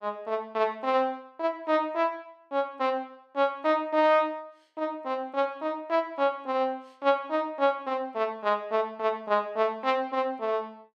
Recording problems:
none

